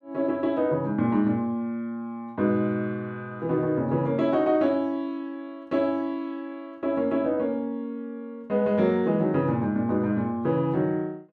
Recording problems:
none

